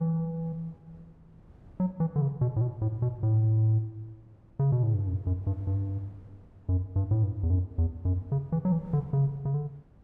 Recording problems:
wind on the microphone; below 220 Hz, SNR 26 dB

